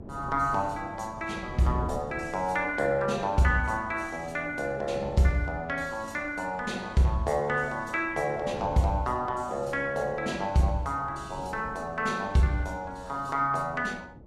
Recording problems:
lossy compression; Vorbis, log-spectral distance 2 dB, nothing above 12.7 kHz
wind noise; below 340 Hz, SNR 18 dB

